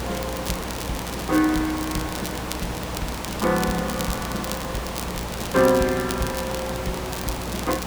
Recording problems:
electrical hum; 60 Hz, harmonics up to 360 Hz, SNR 11 dB
background hiss; slope -5 dB per octave, SNR 5 dB
crackling; vinyl, SNR 9 dB

